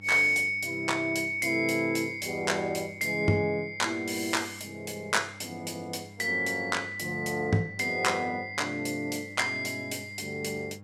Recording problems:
electrical hum; 50 Hz, harmonics up to 1.1 kHz, SNR 21 dB

